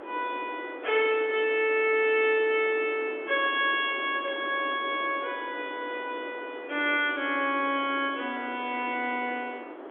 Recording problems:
telephone audio; 260 Hz to 3.4 kHz, G.711
wind on the microphone; below 820 Hz, SNR 14 dB

